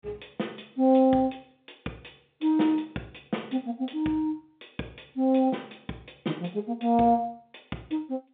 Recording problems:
telephone audio; 170 Hz to 3.7 kHz, G.711

